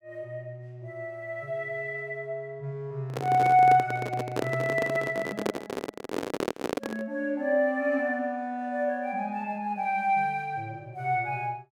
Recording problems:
microphone handling noise; from 3 to 7 s; peak +3 dB vs average level

